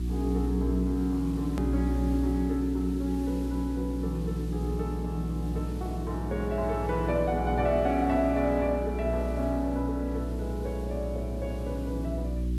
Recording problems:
mains hum; 60 Hz, harmonics up to 360 Hz, SNR 3 dB
hiss; slope 0 dB per octave, SNR 23 dB
hard cut with a click; at 1.5 s

